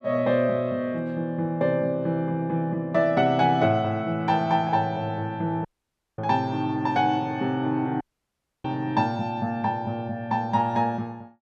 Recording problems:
audio cutting out; at 5.5 s for 0.5 s and at 8 s for 0.5 s

